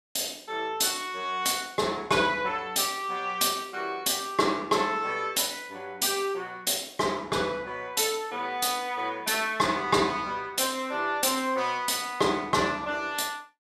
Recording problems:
none

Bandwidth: 14.5 kHz